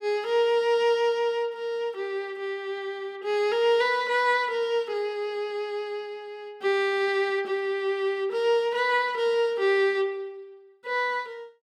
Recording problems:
none

